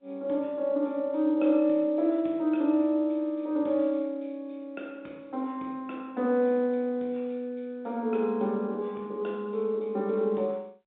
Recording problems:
phone line; 220 Hz to 3.8 kHz, G.711

